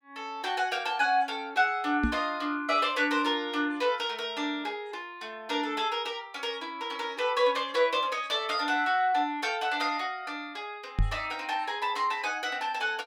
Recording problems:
microphone thump; at 2 s and at 11 s; peak +5 dB vs average level

